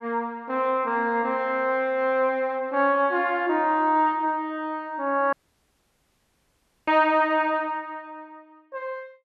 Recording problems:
audio cutting out; at 5.5 s for 1.5 s

